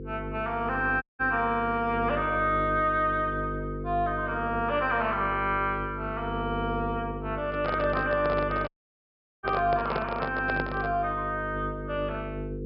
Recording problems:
low-pass filter; nothing above 5.5 kHz
electrical hum; 50 Hz, harmonics up to 500 Hz, SNR 8 dB
audio cutting out; at 1 s and at 8.5 s for 1 s
microphone handling noise; from 7.5 to 11 s; peak +1 dB vs average level

